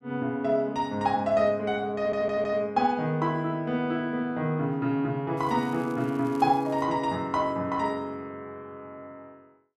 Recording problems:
stutter; at 2 s
crackling; from 5.5 to 7 s; loose cable, SNR 28 dB

